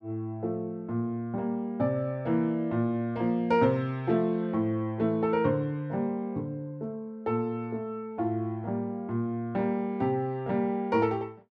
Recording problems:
none

